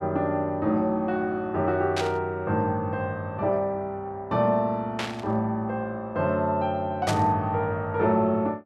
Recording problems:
static burst; at 2 s, at 5 s and at 7 s; peak -1 dB vs average level

